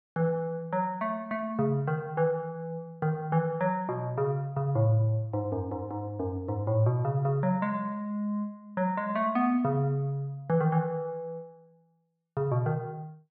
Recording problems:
none

